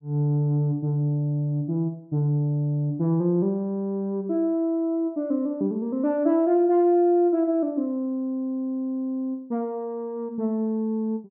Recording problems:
none

